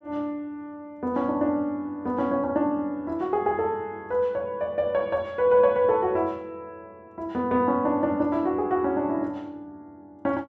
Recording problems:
none

